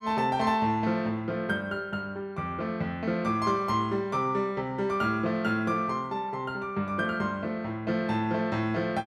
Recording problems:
none

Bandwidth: 14 kHz